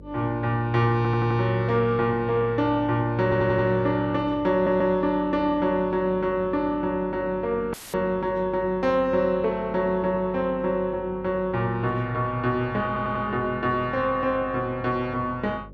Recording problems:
electrical hum; 50 Hz, harmonics up to 600 Hz, SNR 21 dB
stutter; 4 times, first at 1 s
audio cutting out; at 7.5 s; filled with static

